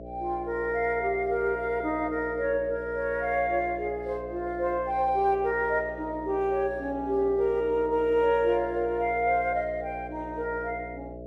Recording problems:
electrical hum; 60 Hz, harmonics up to 660 Hz, SNR 14 dB

